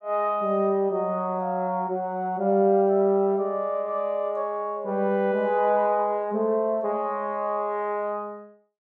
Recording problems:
none

